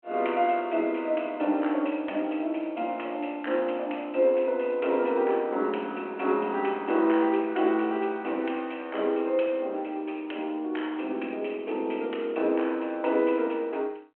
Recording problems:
phone line; 260 Hz to 3.2 kHz, G.726

